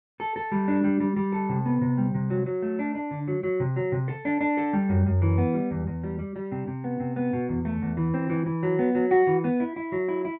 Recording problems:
none

